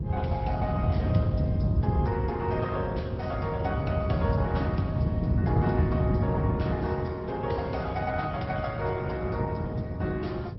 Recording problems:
treble missing; nothing above 5.5 kHz
codec artefacts; Opus, then Opus, log-spectral distance 2 dB
low-frequency rumble; below 160 Hz, SNR -4 dB

